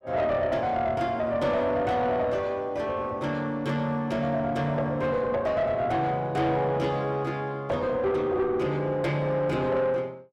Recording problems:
distortion; soft clipping, signal-to-distortion ratio 11 dB

